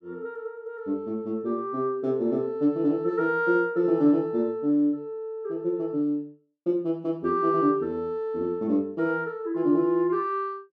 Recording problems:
none

